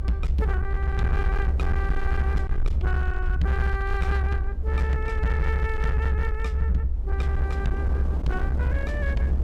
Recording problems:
distorted audio; hard clipping, uneven, signal-to-distortion ratio 10 dB
low-frequency rumble; below 70 Hz, SNR -5 dB
wind on the microphone; below 200 Hz, SNR 8 dB

